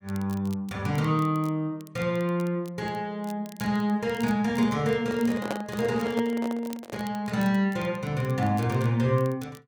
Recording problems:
crackle; vinyl, SNR 23 dB
handling noise; from 5 to 7 s; peak +1 dB vs average level

